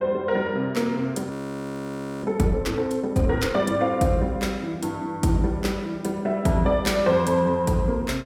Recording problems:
audio freezing; at 1.5 s for 1 s

